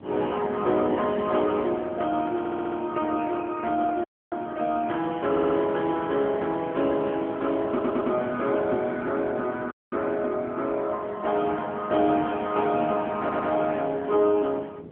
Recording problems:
phone line; 220 Hz to 3.3 kHz, AMR-NB
background hiss; SNR 41 dB
wind on the microphone; below 380 Hz, SNR 17 dB
stutter; 4 times, first at 2.5 s
dropout; at 4 s and at 9.5 s

